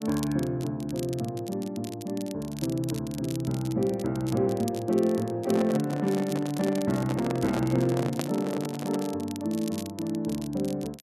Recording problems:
crackle; vinyl, SNR 16 dB
microphone handling noise; from 5.5 to 9 s; peak +1 dB vs average level

